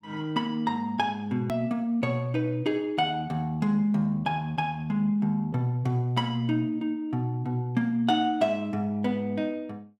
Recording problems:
click at an edit; at 1.5 s

